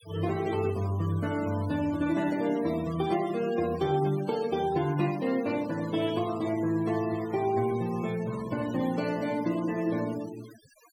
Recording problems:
denoising artefacts; signal-to-artefact ratio 18 dB

